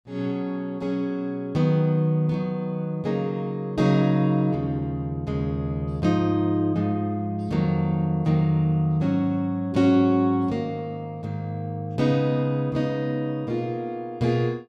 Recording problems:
none

